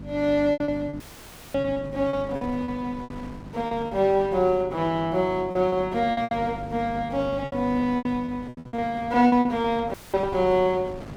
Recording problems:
hum; 50 Hz, harmonics up to 350 Hz, SNR 16 dB
wind on the microphone; below 570 Hz, SNR 20 dB
lost packets; 14% of the sound replaced, filled with repeated pitch periods
dropout; at 1 s for 0.5 s and at 10 s; filled with static

